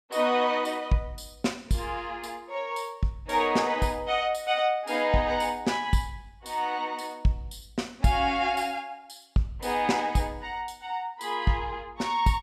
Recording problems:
none

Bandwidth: 14.5 kHz